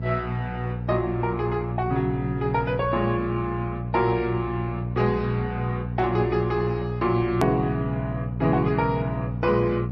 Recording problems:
lossy compression; MP3, then Opus, log-spectral distance 2 dB, nothing above 13.1 kHz
mains hum; 60 Hz, harmonics up to 480 Hz, SNR 5 dB
edit click; at 7.5 s

